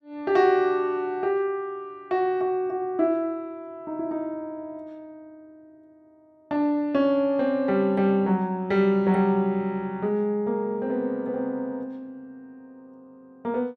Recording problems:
none

